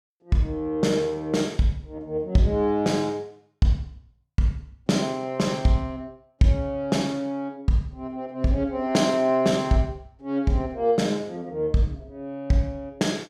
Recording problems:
none

